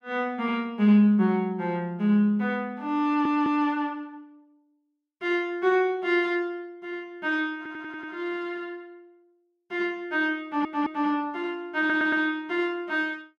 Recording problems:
stutter; 4 times, first at 3 s

